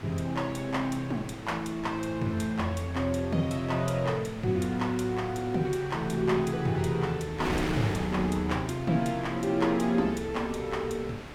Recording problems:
wind on the microphone; below 2 kHz, SNR 11 dB

